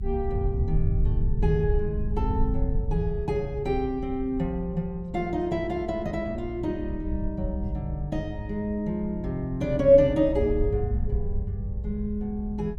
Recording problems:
low-frequency rumble; below 82 Hz, SNR 5 dB

